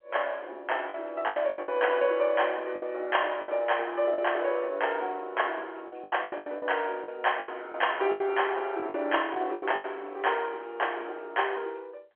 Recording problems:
telephone audio; 320 Hz to 3.3 kHz, G.711
lost packets; 10% of the sound replaced, filled with the last packet

